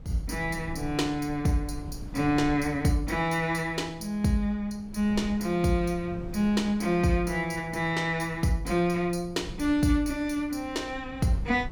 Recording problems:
wind on the microphone; below 140 Hz, SNR 16 dB

